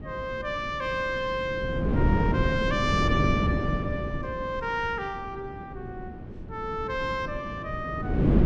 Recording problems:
wind on the microphone; below 280 Hz, SNR -1 dB

